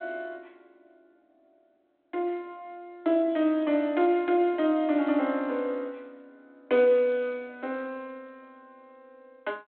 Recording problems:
telephone audio; 240 Hz to 3.6 kHz, G.726

